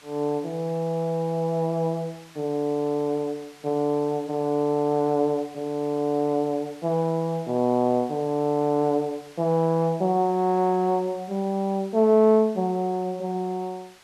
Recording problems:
background hiss; SNR 25 dB

